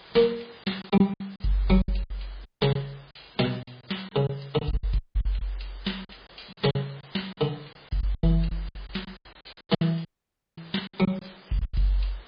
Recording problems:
lossy compression; MP3, log-spectral distance 12 dB, nothing above 4.5 kHz
background hiss; SNR 22 dB
packet loss; 13% of the sound replaced, filled with silence
audio cutting out; at 2.5 s, at 5 s and at 10 s for 0.5 s

